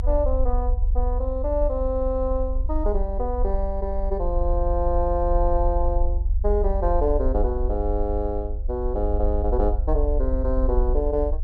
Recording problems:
rumble; below 54 Hz, strongest tone 32 Hz, SNR 0 dB

